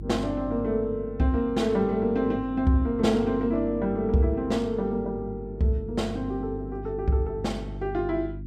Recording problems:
hum; 50 Hz, harmonics up to 350 Hz, SNR 12 dB

